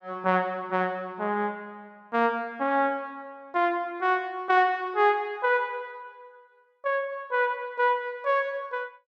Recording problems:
none

